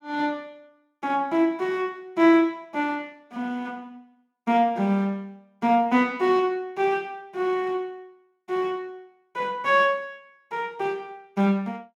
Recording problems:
none

